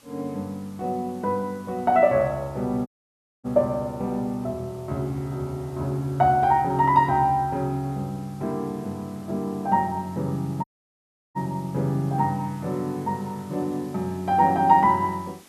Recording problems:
hiss; slope -2 dB per octave, SNR 27 dB
audio cutting out; at 3 s for 0.5 s and at 11 s for 0.5 s

